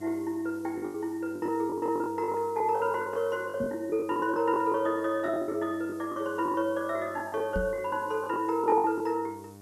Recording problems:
hum; 50 Hz, harmonics up to 1.5 kHz, SNR 22 dB
background hiss; slope +3 dB per octave, SNR 27 dB
packet loss; 14% of the sound replaced, filled with the last packet
knock on the microphone; at 3.5 s and at 7.5 s; peak -1 dB vs average level

